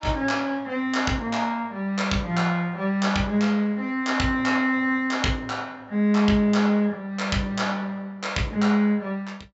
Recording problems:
low-pass filter; nothing above 7.7 kHz

